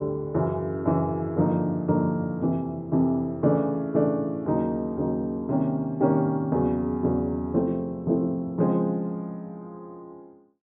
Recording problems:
treble cut off; nothing above 4 kHz

